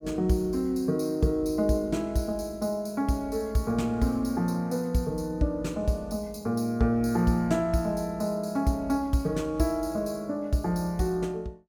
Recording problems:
none

